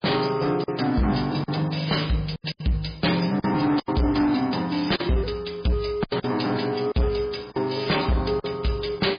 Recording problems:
lossy codec; MP3, log-spectral distance 7 dB
distortion; hard clipping, signal-to-distortion ratio 7 dB
packet loss; 7% of the sound replaced, filled with silence

